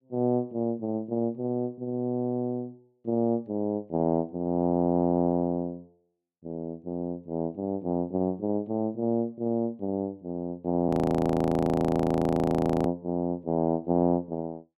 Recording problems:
frozen audio; at 11 s for 2 s

